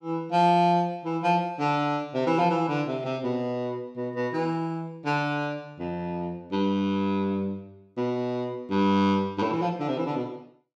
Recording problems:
none

